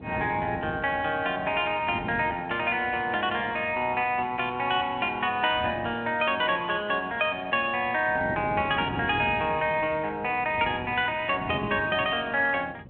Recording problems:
telephone audio; 280 Hz to 3.5 kHz, G.726
wind on the microphone; below 360 Hz, SNR 15 dB

